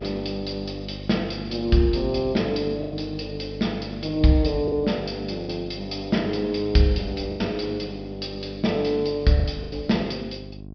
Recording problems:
treble cut off; nothing above 5.5 kHz
hum; 50 Hz, harmonics up to 700 Hz, SNR 13 dB
lost packets; 3% of the sound replaced, filled with the last packet

